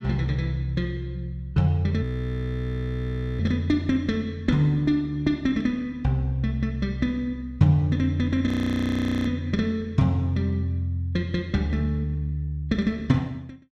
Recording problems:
frozen audio; at 2 s for 1.5 s and at 8.5 s for 1 s

